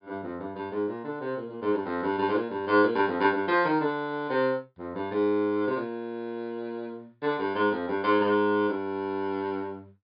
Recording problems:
low-pass filter; nothing above 5.1 kHz

